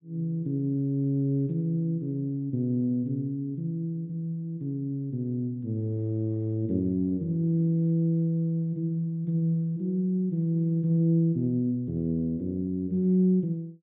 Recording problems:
low-pass filter; nothing above 4 kHz

